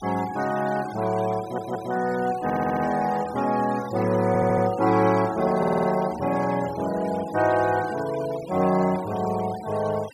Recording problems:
noise reduction artefacts; signal-to-artefact ratio 17 dB
stutter; 4 times, first at 1.5 s

